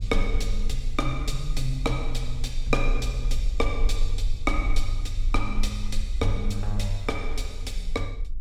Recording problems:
low-frequency rumble; below 38 Hz, strongest tone 18 Hz, SNR 1 dB

